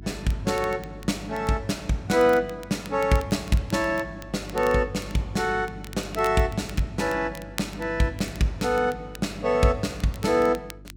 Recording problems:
mains hum; 50 Hz, harmonics up to 350 Hz, SNR 18 dB
crackle; vinyl, SNR 20 dB

